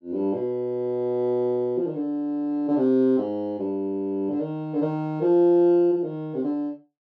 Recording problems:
none

